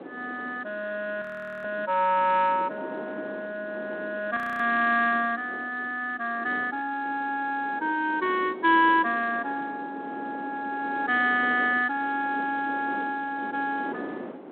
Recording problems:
telephone audio; 240 Hz to 3.7 kHz, G.726
wind on the microphone; below 630 Hz, SNR 15 dB
frozen audio; at 1 s and at 4.5 s

